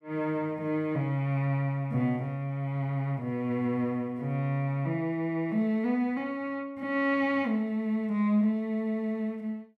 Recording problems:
none

